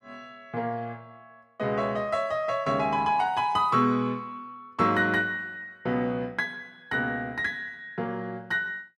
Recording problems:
none

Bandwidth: 13 kHz